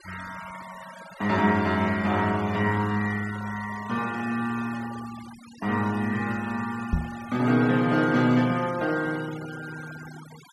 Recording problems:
denoising artefacts; signal-to-artefact ratio 17 dB
microphone bump; at 7 s; peak +4 dB vs average level

